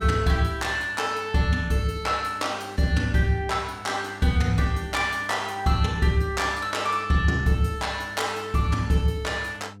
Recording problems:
hum; 50 Hz, harmonics up to 700 Hz, SNR 21 dB

